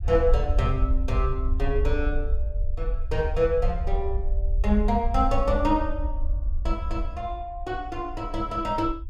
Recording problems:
low-frequency rumble; below 60 Hz, SNR 1 dB

